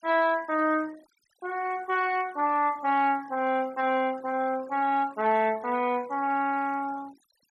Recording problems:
noise reduction artefacts; signal-to-artefact ratio 22 dB

